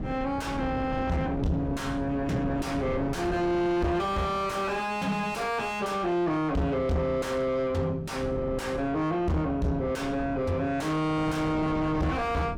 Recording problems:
distortion; soft clipping, signal-to-distortion ratio 5 dB
wind on the microphone; below 320 Hz, SNR 8 dB

